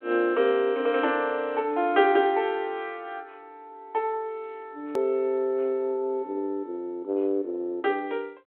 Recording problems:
telephone audio; 300 Hz to 3.6 kHz, G.726
click at an edit; at 5 s

